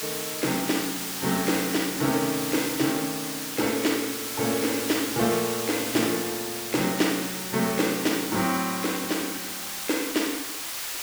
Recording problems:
hiss; slope +1 dB per octave, SNR 3 dB

